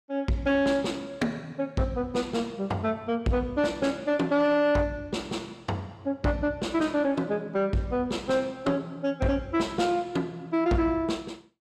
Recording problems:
distortion; soft clipping, signal-to-distortion ratio 11 dB

